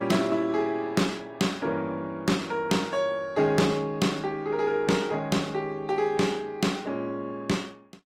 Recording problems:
lossy codec; Opus, log-spectral distance 3 dB, nothing above 20.1 kHz

